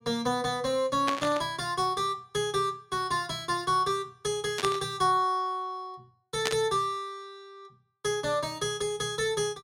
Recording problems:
burst of static; at 1 s, at 4.5 s and at 6.5 s; peak +4 dB vs average level

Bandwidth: 16 kHz